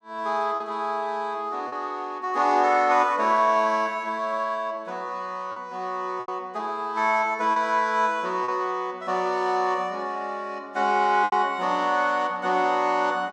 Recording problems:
packet loss; 3% of the sound replaced, filled with repeated pitch periods

